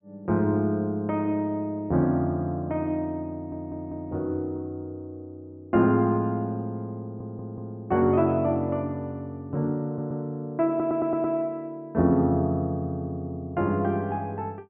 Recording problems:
low-pass filter; nothing above 3.3 kHz
stutter; 4 times, first at 3.5 s

